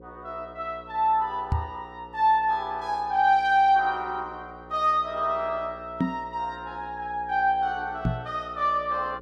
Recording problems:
mains hum; 60 Hz, harmonics up to 540 Hz, SNR 21 dB
knock on the microphone; at 1.5 s, at 6 s and at 8 s; peak +4 dB vs average level

